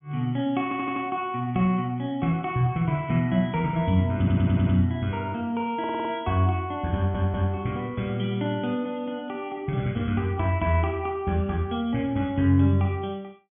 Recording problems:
treble missing; nothing above 3.3 kHz
stutter; 4 times, first at 0.5 s

